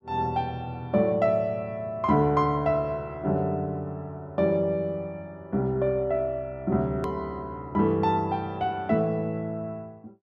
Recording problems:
click at an edit; at 7 s

